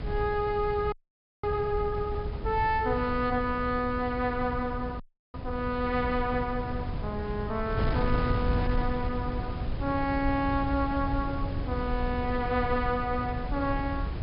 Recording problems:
treble missing; nothing above 5.5 kHz
electrical hum; 60 Hz, harmonics up to 720 Hz, SNR 13 dB
wind noise; below 130 Hz, SNR 5 dB
audio freezing; at 1 s for 0.5 s and at 5 s

